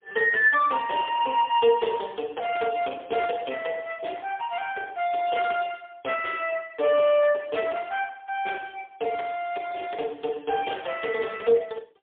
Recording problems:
phone line; 320 Hz to 3.5 kHz, AMR-NB, then MP3

